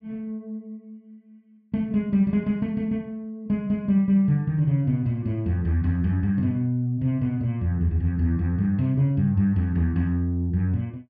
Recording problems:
none

